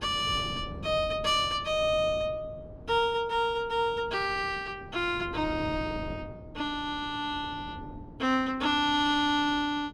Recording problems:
wind noise; below 300 Hz, SNR 15 dB

